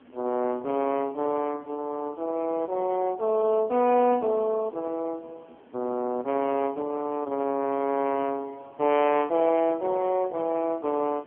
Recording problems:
phone line; 220 Hz to 3.1 kHz, AMR-NB
background hiss; SNR 26 dB

